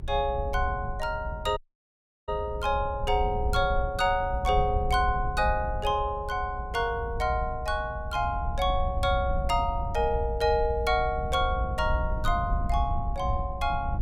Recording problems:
low-frequency rumble; below 78 Hz, SNR 5 dB
audio cutting out; at 1.5 s for 0.5 s

